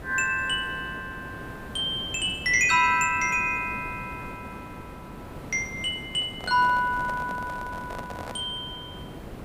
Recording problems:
background hiss; slope -8 dB per octave, SNR 15 dB
microphone handling noise; from 6 to 8.5 s; peak -9 dB vs average level

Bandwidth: 15.5 kHz